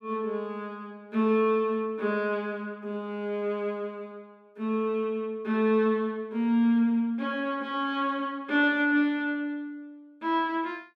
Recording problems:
none

